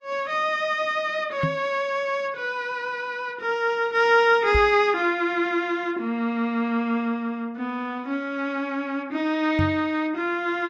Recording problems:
lossy codec; Vorbis, log-spectral distance 2 dB
microphone bump; at 1.5 s, at 4.5 s and at 9.5 s; peak +2 dB vs average level

